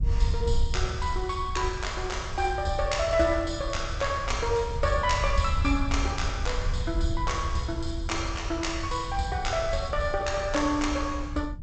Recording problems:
codec artefacts; G.722, log-spectral distance 3 dB, nothing above 7.8 kHz
wind on the microphone; below 78 Hz, SNR 5 dB

